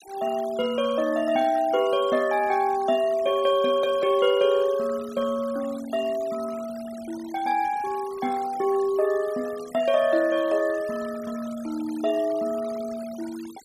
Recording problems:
denoising artefacts; signal-to-artefact ratio 20 dB

